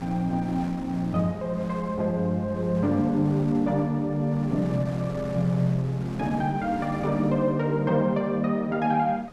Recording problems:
wind noise; below 1 kHz, SNR 17 dB

